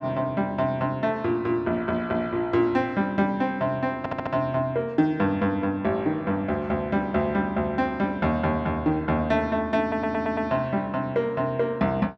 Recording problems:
stutter; at 4 s and at 10 s

